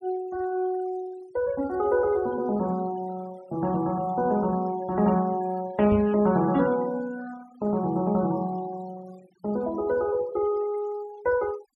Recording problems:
noise reduction artefacts; signal-to-artefact ratio 23 dB
knock on the microphone; at 6 s; peak -1 dB vs average level

